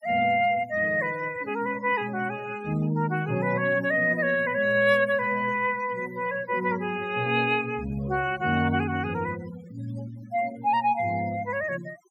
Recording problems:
denoising artefacts; signal-to-artefact ratio 17 dB

